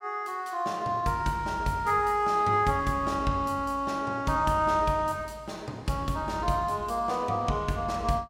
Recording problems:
none

